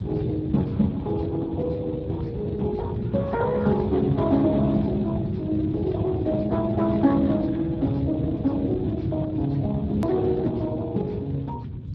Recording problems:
lossy codec; Speex, log-spectral distance 3 dB, nothing above 13.1 kHz
low-frequency rumble; below 180 Hz, SNR 7 dB
edit click; at 10 s

